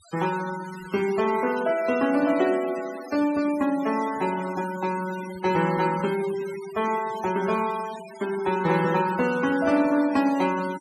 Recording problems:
denoising artefacts; signal-to-artefact ratio 15 dB

